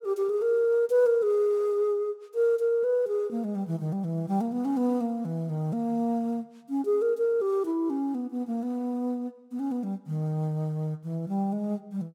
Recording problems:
none

